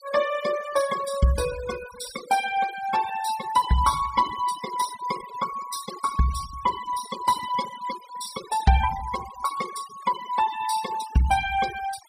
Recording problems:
noise reduction artefacts; signal-to-artefact ratio 12 dB

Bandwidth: 15 kHz